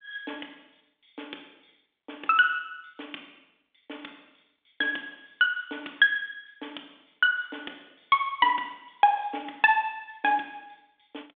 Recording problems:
phone line; 240 Hz to 3.6 kHz, G.726

